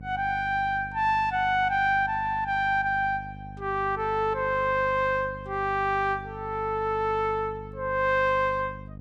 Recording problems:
mains hum; 50 Hz, harmonics up to 550 Hz, SNR 16 dB

